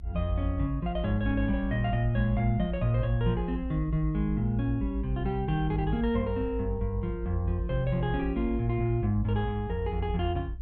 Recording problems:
low-frequency rumble; below 60 Hz, strongest tone 50 Hz, SNR 6 dB

